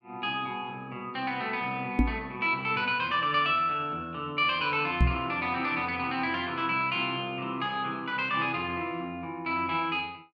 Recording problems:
microphone thump; at 2 s and at 5 s; peak +9 dB vs average level

